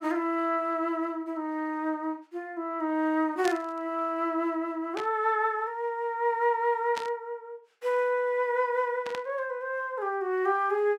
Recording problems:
static burst; 4 times, first at 3.5 s; peak -4 dB vs average level

